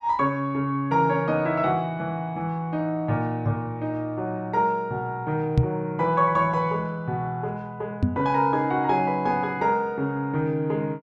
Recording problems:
microphone bump; at 5.5 s and at 8 s; peak +9 dB vs average level

